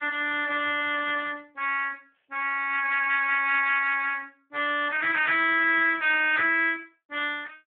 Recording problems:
telephone audio; 300 Hz to 3.4 kHz, Speex

